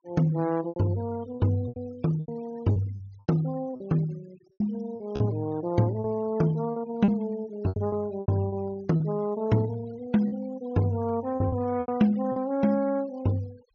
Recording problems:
treble missing; nothing above 6.8 kHz
denoising artefacts; signal-to-artefact ratio 23 dB
lost packets; 9% of the sound replaced, filled with repeated pitch periods

